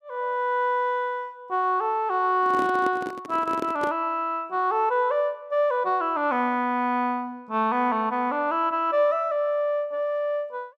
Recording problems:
handling noise; from 2.5 to 4 s; peak -2 dB vs average level

